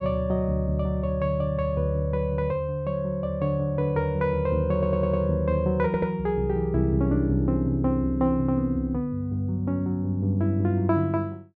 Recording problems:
audio stuttering; at 4.5 s and at 6 s

